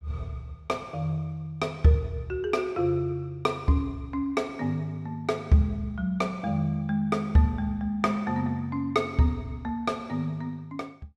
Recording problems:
none

